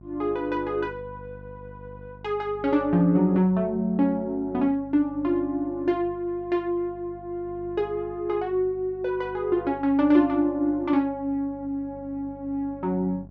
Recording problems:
mains hum; 50 Hz, harmonics up to 750 Hz, SNR 21 dB

